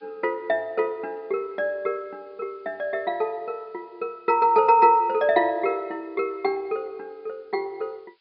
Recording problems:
treble cut off; nothing above 4.9 kHz
background hiss; SNR 43 dB

